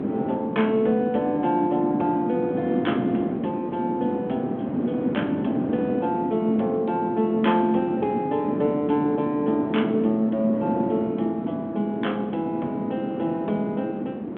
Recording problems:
phone line; 170 Hz to 3.4 kHz, G.726
wind on the microphone; below 370 Hz, SNR 3 dB

